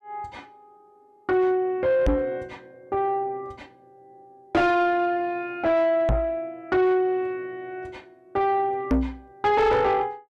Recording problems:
distortion; soft clipping, signal-to-distortion ratio 7 dB
knock on the microphone; at 2 s, at 6 s and at 9 s; peak +5 dB vs average level

